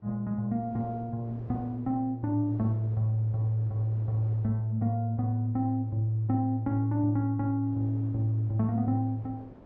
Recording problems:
wind noise; below 540 Hz, SNR 22 dB

